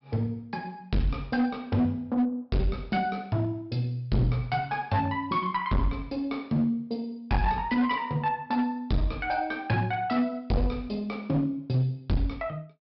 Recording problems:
treble missing; nothing above 5.4 kHz
distorted audio; hard clipping, uneven, signal-to-distortion ratio 7 dB

